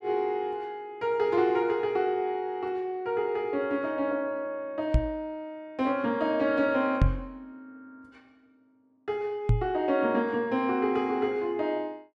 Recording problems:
knock on the microphone; at 5 s, at 7 s and at 9.5 s; peak +8 dB vs average level

